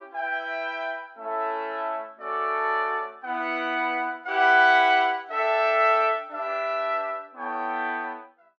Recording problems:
none

